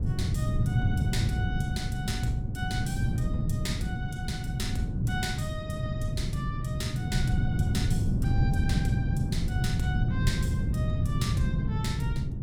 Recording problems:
wind noise; below 160 Hz, SNR -7 dB

